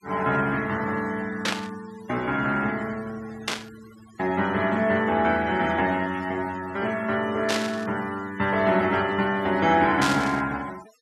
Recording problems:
denoising artefacts; signal-to-artefact ratio 20 dB
static burst; 4 times, first at 1.5 s; peak +3 dB vs average level

